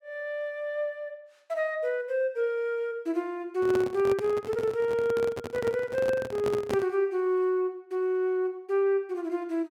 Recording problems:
handling noise; from 3.5 to 7 s; peak 0 dB vs average level

